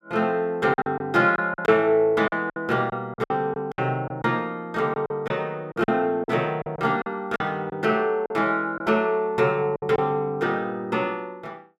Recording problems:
packet loss; 9% of the sound replaced, filled with silence

